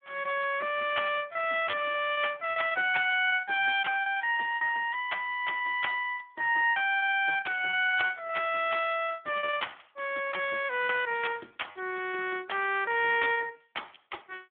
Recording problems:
phone line; 300 Hz to 3.4 kHz, Speex
lost packets; 13% of the sound replaced, filled with repeated pitch periods

